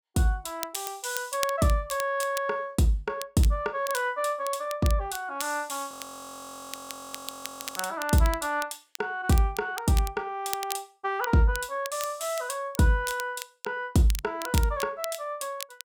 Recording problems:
crackle; vinyl, SNR 12 dB
frozen audio; at 6 s for 2 s

